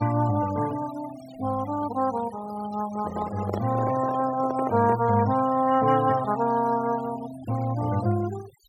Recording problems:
noise reduction artefacts; signal-to-artefact ratio 16 dB
handling noise; from 3 to 5 s; peak -1 dB vs average level

